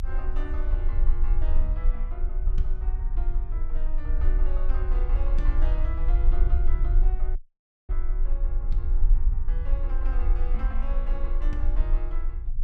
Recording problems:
low-frequency rumble; below 38 Hz, strongest tone 20 Hz, SNR -13 dB
audio cutting out; at 7.5 s for 0.5 s

